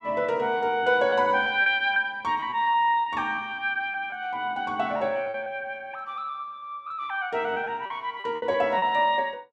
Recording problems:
lost packets; 8% of the sound replaced, filled with repeated pitch periods

